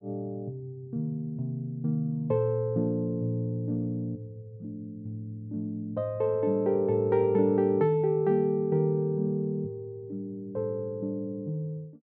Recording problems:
none

